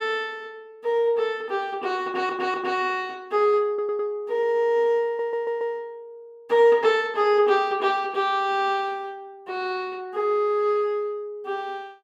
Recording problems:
stutter; at 2 s, at 3.5 s and at 5 s

